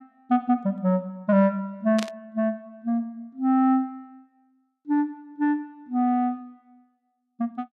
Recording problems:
static burst; at 2 s; peak -4 dB vs average level

